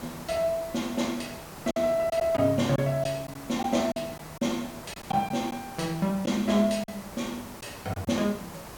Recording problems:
background hiss; SNR 14 dB
lost packets; 5% of the sound replaced, filled with silence

